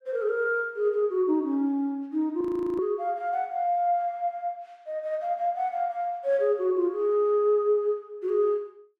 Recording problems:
audio freezing; at 2.5 s

